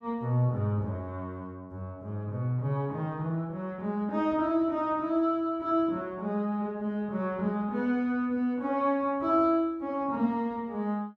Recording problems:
none

